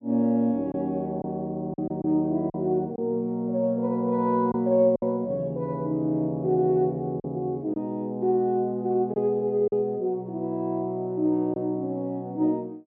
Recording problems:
packet loss; 3% of the sound replaced, filled with silence

